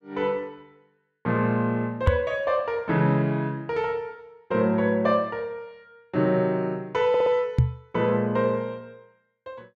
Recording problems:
microphone thump; at 2 s and at 7.5 s; peak +8 dB vs average level
stutter; at 7 s

